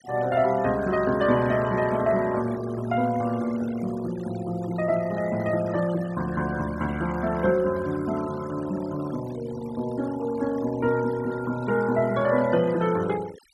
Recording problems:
denoising artefacts; signal-to-artefact ratio 18 dB

